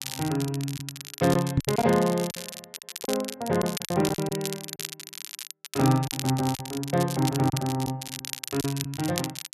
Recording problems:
crackling; vinyl, SNR 9 dB
packet loss; 8% of the sound replaced, filled with silence
microphone bump; at 1.5 s; peak +9 dB vs average level

